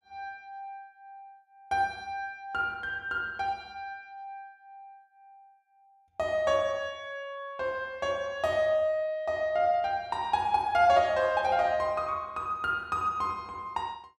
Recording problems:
none

